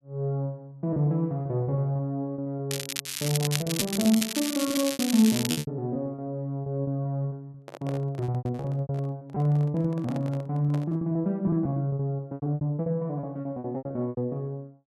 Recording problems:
packet loss; 17% of the sound replaced, filled with repeated pitch periods
crackling; from 2.5 to 5.5 s; loose cable, SNR 3 dB
microphone handling noise; from 7.5 to 11 s; peak -7 dB vs average level

